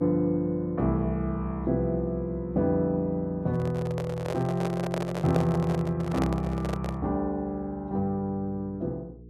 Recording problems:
mains hum; 60 Hz, harmonics up to 480 Hz, SNR 20 dB
microphone handling noise; from 3.5 to 7 s; peak +2 dB vs average level

